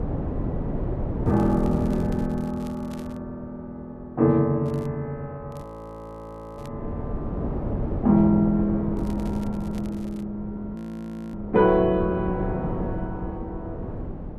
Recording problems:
wind noise; below 330 Hz, SNR 6 dB
crackle; 4 times, first at 1.5 s; loose cable, SNR 28 dB
audio freezing; at 5.5 s for 1 s and at 11 s for 0.5 s

